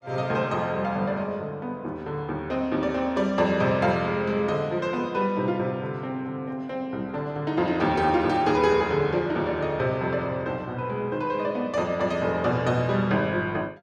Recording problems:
none

